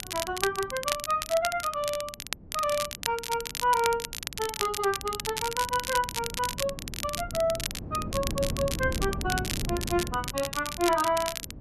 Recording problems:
wind noise; below 240 Hz, SNR 10 dB
crackling; vinyl, SNR 5 dB

